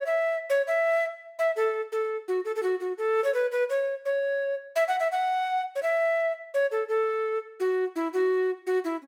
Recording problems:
none

